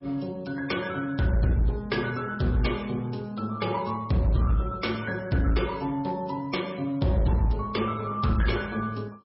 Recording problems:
codec artefacts; MP3, log-spectral distance 3 dB, nothing above 5.5 kHz
distorted audio; hard clipping, uneven, signal-to-distortion ratio 11 dB

